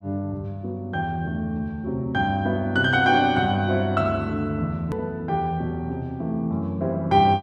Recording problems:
hard cut with a click; at 5 s

